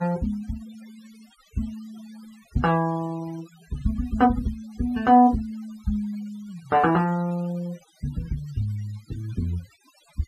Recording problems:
denoising artefacts; signal-to-artefact ratio 24 dB

